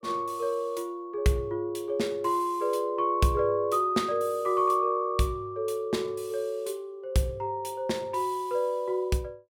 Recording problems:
none

